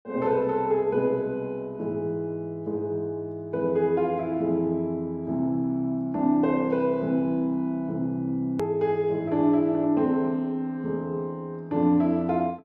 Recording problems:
edit click; at 8.5 s

